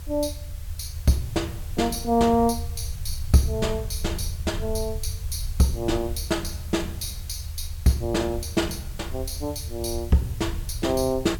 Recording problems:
hiss; slope -1 dB per octave, SNR 19 dB
low-frequency rumble; below 80 Hz, SNR 8 dB

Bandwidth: 17 kHz